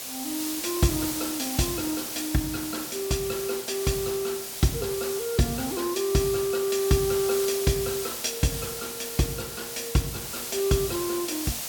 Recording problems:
hiss; slope 0 dB per octave, SNR 4 dB

